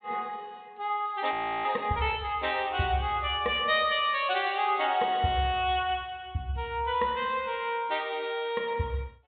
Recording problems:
treble missing; nothing above 4 kHz
frozen audio; at 1.5 s

